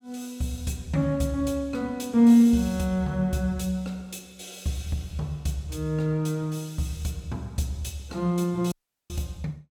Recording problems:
audio cutting out; at 8.5 s

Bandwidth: 17.5 kHz